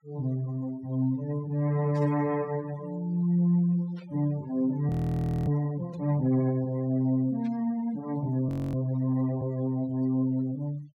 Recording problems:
noise reduction artefacts; signal-to-artefact ratio 23 dB
burst of static; 4 times, first at 2 s; peak -21 dB vs average level
audio freezing; at 5 s for 0.5 s and at 8.5 s

